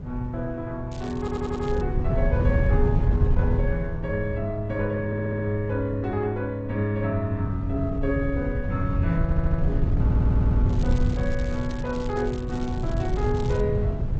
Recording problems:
lossy codec; Opus, then G.722, log-spectral distance 2 dB
wind on the microphone; below 120 Hz, SNR -1 dB
crackling; at 1 s and from 11 to 14 s; loose cable, SNR 20 dB
stutter; 4 times, first at 1 s

